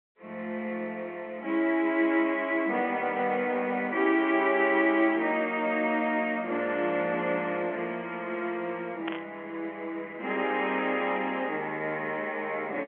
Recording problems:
telephone audio; 260 Hz to 3.4 kHz, G.711
burst of static; at 9 s; peak -4 dB vs average level

